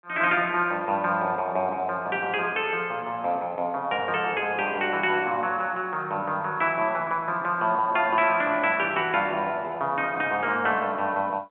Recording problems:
telephone audio; 220 Hz to 3.3 kHz, G.711

